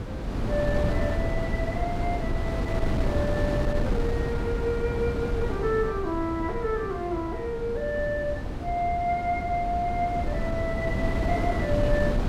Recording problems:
wind on the microphone; below 300 Hz, SNR 0 dB

